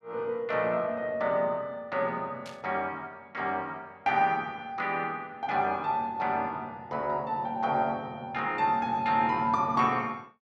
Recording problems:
static burst; at 2.5 s; peak -12 dB vs average level

